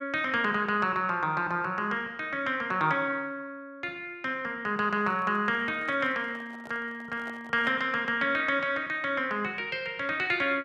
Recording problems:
microphone handling noise; from 5 to 8 s; peak -11 dB vs average level

